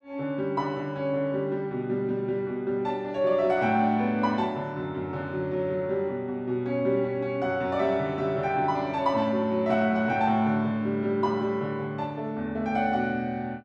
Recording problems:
none

